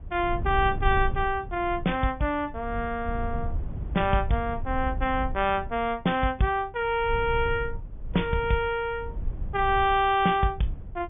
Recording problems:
treble missing; nothing above 3.5 kHz
rumble; below 84 Hz, SNR 9 dB

